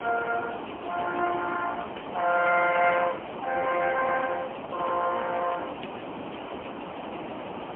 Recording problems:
telephone audio; 300 Hz to 2.6 kHz, AMR-NB, then MP3
hiss; SNR 10 dB

